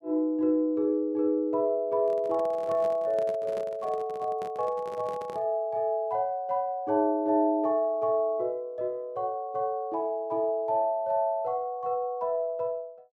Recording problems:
handling noise; from 2 to 5.5 s; peak -9 dB vs average level

